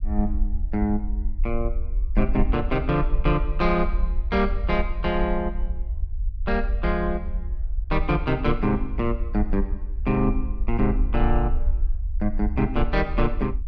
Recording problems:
low-frequency rumble; below 52 Hz, SNR 3 dB

